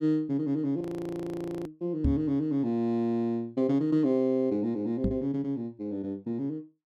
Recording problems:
frozen audio; at 1 s for 1 s
knock on the microphone; at 2 s and at 5 s; peak +4 dB vs average level

